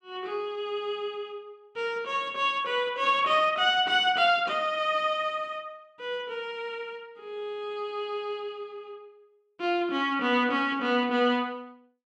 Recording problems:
none

